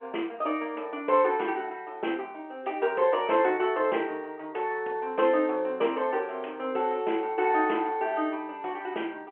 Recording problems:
phone line; 240 Hz to 3.2 kHz, G.711

